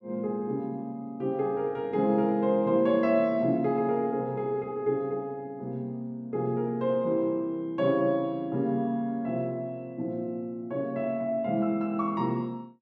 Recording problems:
none

